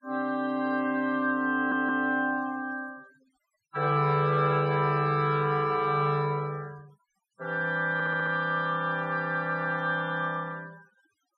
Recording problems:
denoising artefacts; signal-to-artefact ratio 26 dB
stutter; at 1.5 s and at 8 s

